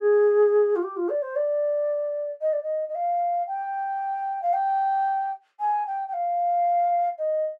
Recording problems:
none

